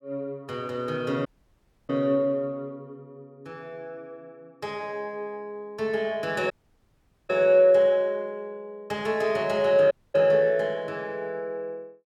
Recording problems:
dropout; at 1.5 s for 0.5 s, at 6.5 s for 1 s and at 10 s

